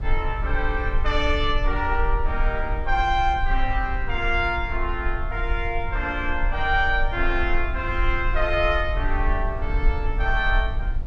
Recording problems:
low-frequency rumble; below 48 Hz, strongest tone 20 Hz, SNR 3 dB

